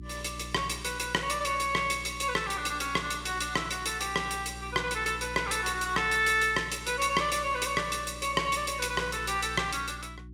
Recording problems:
electrical hum; 60 Hz, harmonics up to 360 Hz, SNR 16 dB

